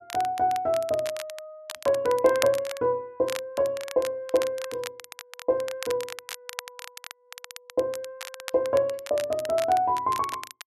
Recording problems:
crackling; vinyl, SNR 13 dB

